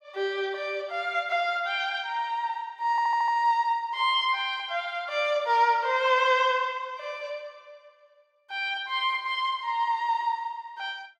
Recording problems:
audio stuttering; at 3 s

